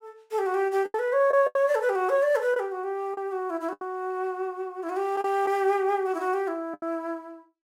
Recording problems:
packet loss; 6% of the sound replaced, filled with the last packet

